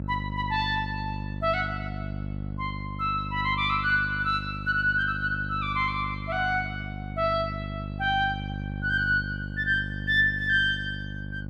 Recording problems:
hum; 50 Hz, harmonics up to 600 Hz, SNR 9 dB

